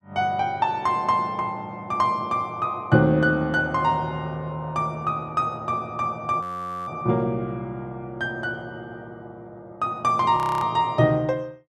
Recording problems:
frozen audio; at 6.5 s and at 10 s

